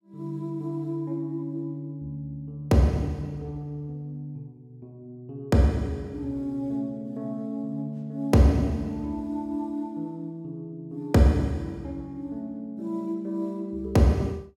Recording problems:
none

